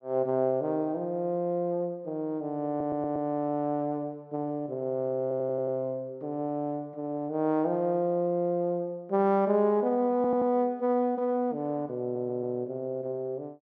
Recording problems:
stutter; 4 times, first at 2.5 s

